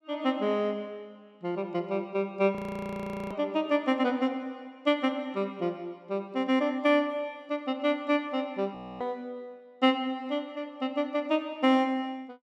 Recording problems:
audio freezing; at 2.5 s for 1 s and at 9 s

